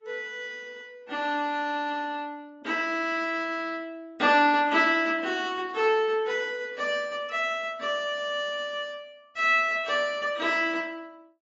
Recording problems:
codec artefacts; AAC, log-spectral distance 2 dB, nothing above 7.3 kHz

